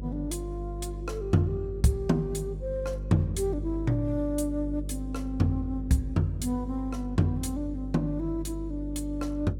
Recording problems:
hum; 50 Hz, harmonics up to 550 Hz, SNR 7 dB

